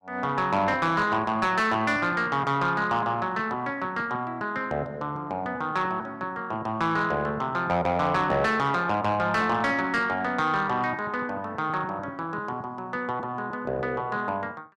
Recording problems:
distorted audio; soft clipping, signal-to-distortion ratio 12 dB

